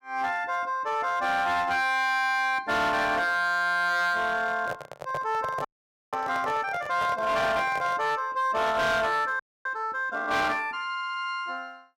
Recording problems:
distorted audio; hard clipping, signal-to-distortion ratio 11 dB
microphone handling noise; from 4.5 to 8 s; peak -4 dB vs average level
audio freezing; at 5.5 s and at 9.5 s

